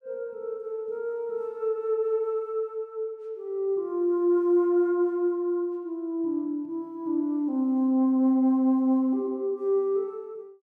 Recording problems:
none

